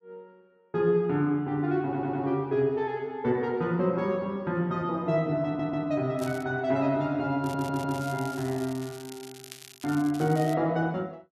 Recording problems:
audio stuttering; at 2 s, at 5.5 s and at 7.5 s
crackle; at 6 s and from 7.5 to 11 s; loose cable, SNR 18 dB

